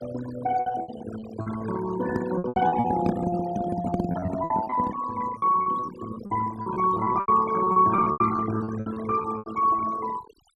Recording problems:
denoising artefacts; signal-to-artefact ratio 12 dB
lost packets; 15% of the sound replaced, filled with repeated pitch periods
microphone handling noise; from 2 to 5 s; peak +3 dB vs average level

